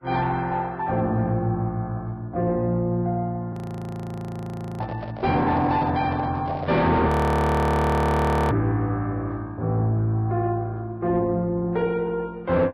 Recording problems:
codec artefacts; Vorbis, log-spectral distance 2 dB, nothing above 13.1 kHz
distorted audio; soft clipping, signal-to-distortion ratio 10 dB
audio freezing; at 3.5 s for 1.5 s and at 7 s for 1.5 s
handling noise; from 5 to 7 s; peak -4 dB vs average level

